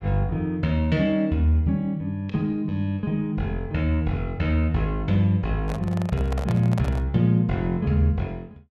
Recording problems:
microphone handling noise; from 5.5 to 7 s; peak -6 dB vs average level

